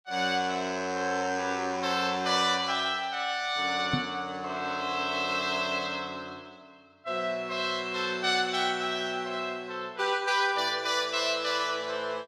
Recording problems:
microphone bump; at 4 s; peak +3 dB vs average level

